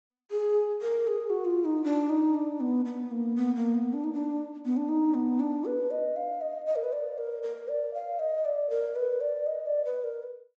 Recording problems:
low-pass filter; nothing above 8 kHz

